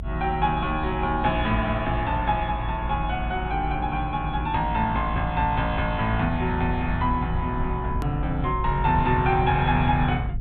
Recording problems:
low-pass filter; nothing above 4 kHz
electrical hum; 60 Hz, harmonics up to 660 Hz, SNR 17 dB
low-frequency rumble; below 82 Hz, strongest tone 52 Hz, SNR 7 dB
edit click; at 8 s

